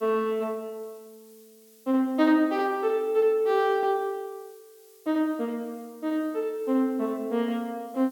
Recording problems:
background hiss; slope +4 dB per octave, SNR 29 dB

